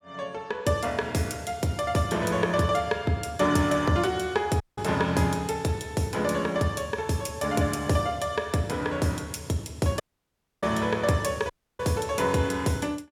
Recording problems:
audio cutting out; at 4.5 s, at 10 s for 0.5 s and at 12 s

